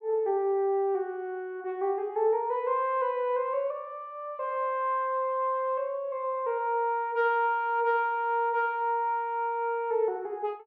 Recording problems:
none

